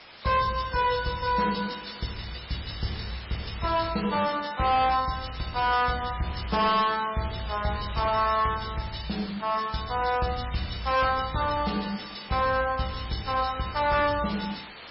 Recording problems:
lossy compression; MP3, log-spectral distance 13 dB, nothing above 5.3 kHz
distortion; hard clipping, signal-to-distortion ratio 10 dB
hiss; SNR 16 dB

